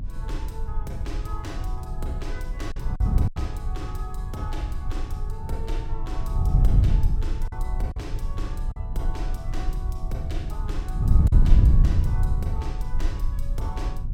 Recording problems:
rumble; below 38 Hz, SNR -3 dB
wind noise; below 98 Hz, SNR -11 dB
packet loss; 2% of the sound replaced, filled with silence

